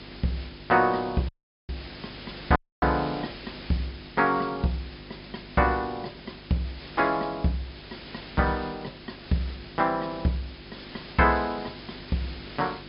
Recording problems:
treble cut off; nothing above 5.5 kHz
hum; 50 Hz, harmonics up to 400 Hz, SNR 21 dB
background hiss; SNR 16 dB
dropout; at 1.5 s and at 2.5 s

